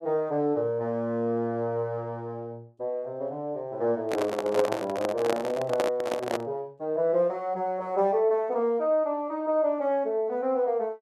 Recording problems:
handling noise; from 4 to 6.5 s; peak +3 dB vs average level

